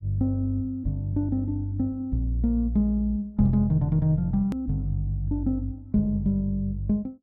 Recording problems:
hard cut with a click; at 4.5 s

